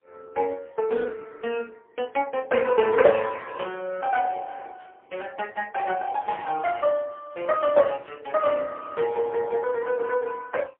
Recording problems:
phone line; 280 Hz to 3.3 kHz, AMR-NB, then MP3

